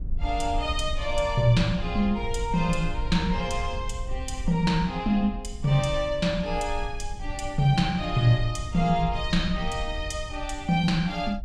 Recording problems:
rumble; below 64 Hz, SNR 10 dB

